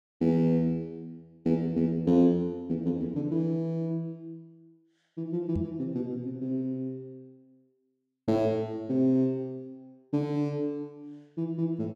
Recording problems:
knock on the microphone; at 5.5 s; peak 0 dB vs average level

